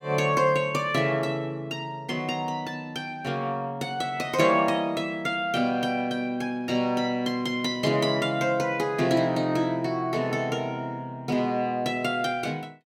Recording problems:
none

